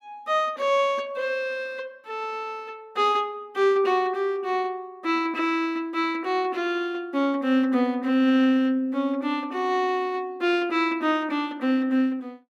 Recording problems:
none

